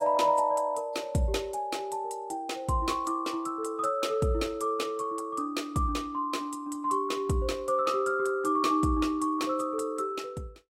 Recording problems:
codec artefacts; AAC, log-spectral distance 2 dB, nothing above 16.5 kHz

